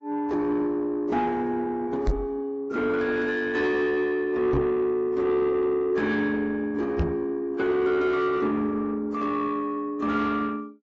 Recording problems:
codec artefacts; AAC, then AAC, log-spectral distance 2 dB, nothing above 7.6 kHz
distortion; soft clipping, signal-to-distortion ratio 12 dB
microphone thump; at 2 s, at 4.5 s and at 7 s; peak +3 dB vs average level

